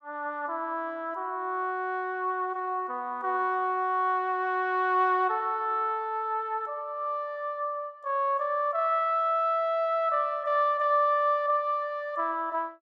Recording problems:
none

